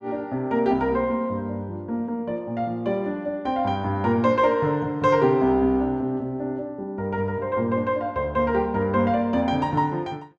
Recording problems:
none

